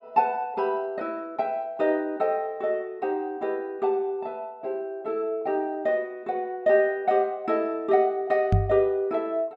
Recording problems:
microphone thump; at 8.5 s; peak +7 dB vs average level

